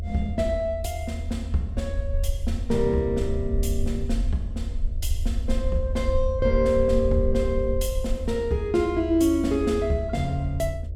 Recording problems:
electrical hum; 60 Hz, harmonics up to 660 Hz, SNR 26 dB
rumble; below 78 Hz, SNR 4 dB

